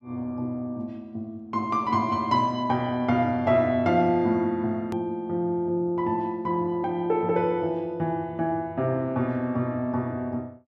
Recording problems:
hard cut with a click; at 5 s

